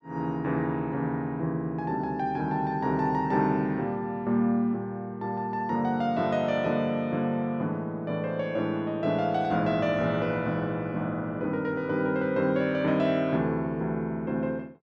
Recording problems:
none

